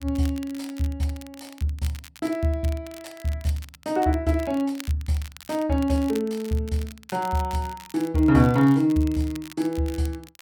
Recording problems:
crackling; vinyl, SNR 20 dB

